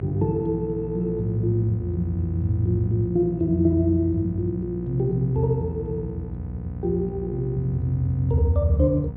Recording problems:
electrical hum; 60 Hz, harmonics up to 780 Hz, SNR 11 dB

